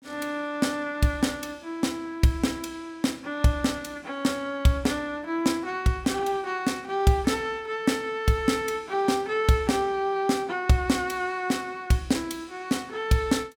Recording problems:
none

